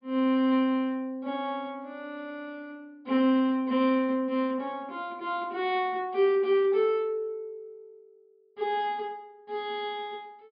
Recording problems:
treble missing; nothing above 5.1 kHz

